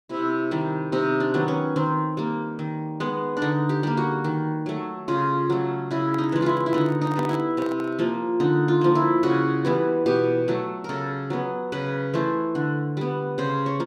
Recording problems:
handling noise; from 6 to 8 s; peak -6 dB vs average level

